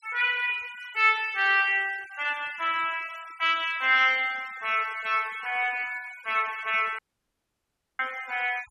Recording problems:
denoising artefacts; signal-to-artefact ratio 23 dB
dropout; at 7 s for 1 s

